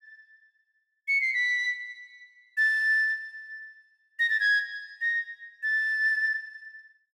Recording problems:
none

